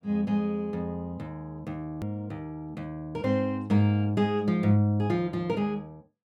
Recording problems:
click at an edit; at 2 s

